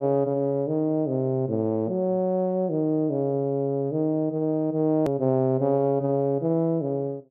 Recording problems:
hard cut with a click; at 5 s

